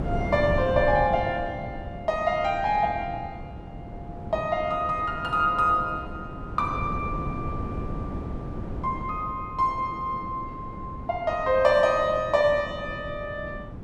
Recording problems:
wind on the microphone; below 300 Hz, SNR 10 dB

